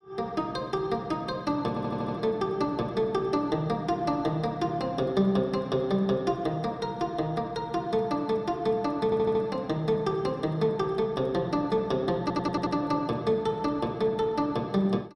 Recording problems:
audio stuttering; at 1.5 s, at 9 s and at 12 s

